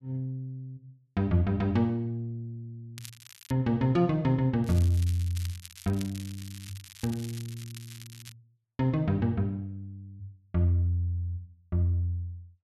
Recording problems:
crackling; at 3 s and from 4.5 to 8.5 s; loose cable, SNR 18 dB

